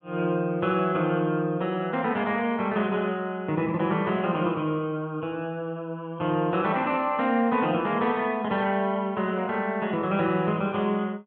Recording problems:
none

